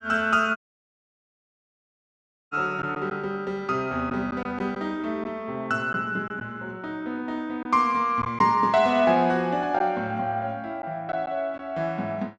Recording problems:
packet loss; 2% of the sound replaced, filled with silence
dropout; at 0.5 s for 2 s

